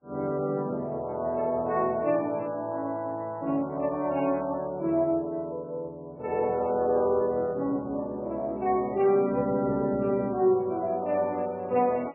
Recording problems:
codec artefacts; MP3, then MP3, log-spectral distance 2 dB, nothing above 2.7 kHz

